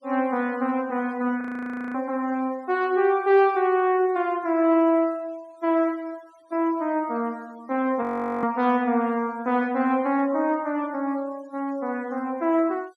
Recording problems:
denoising artefacts; signal-to-artefact ratio 28 dB
frozen audio; at 1.5 s for 0.5 s and at 8 s

